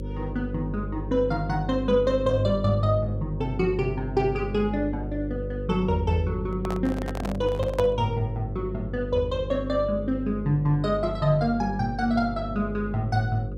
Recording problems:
hum; 50 Hz, harmonics up to 550 Hz, SNR 8 dB
microphone handling noise; from 6.5 to 8 s; peak -1 dB vs average level

